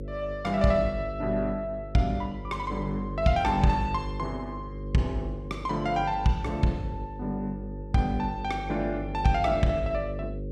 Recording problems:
electrical hum; 50 Hz, harmonics up to 550 Hz, SNR 9 dB

